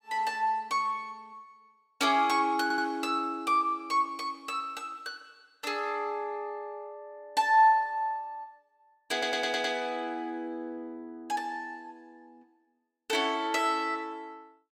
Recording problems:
stutter; at 2.5 s and at 9 s

